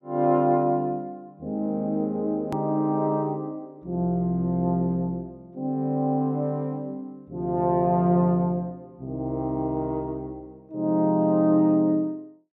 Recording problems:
edit click; at 2.5 s

